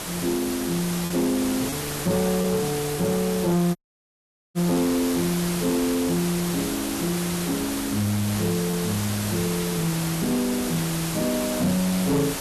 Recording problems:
distortion; soft clipping, signal-to-distortion ratio 11 dB
background hiss; slope -3 dB per octave, SNR 5 dB
lost packets; 0.9% of the sound replaced, filled with repeated pitch periods
audio cutting out; at 4 s for 1 s

